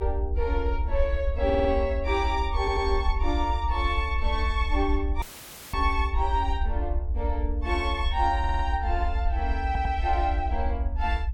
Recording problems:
low-frequency rumble; below 72 Hz, SNR 1 dB
audio stuttering; 4 times, first at 1.5 s
dropout; at 5 s for 0.5 s; filled with static

